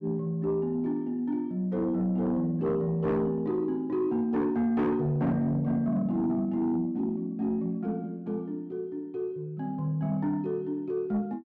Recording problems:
distorted audio; soft clipping, signal-to-distortion ratio 11 dB

